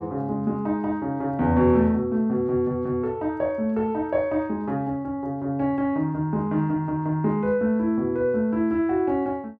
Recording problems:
none

